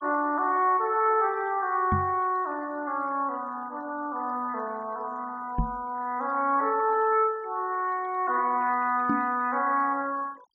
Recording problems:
noise reduction artefacts; signal-to-artefact ratio 25 dB
knock on the microphone; at 2 s, at 5.5 s and at 9 s; peak +3 dB vs average level

